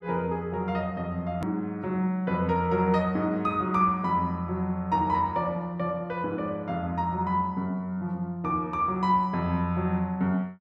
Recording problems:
click at an edit; at 1.5 s

